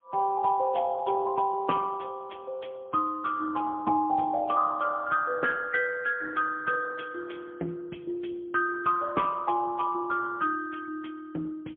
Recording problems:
telephone audio; 260 Hz to 2.2 kHz, AMR-NB, then MP3

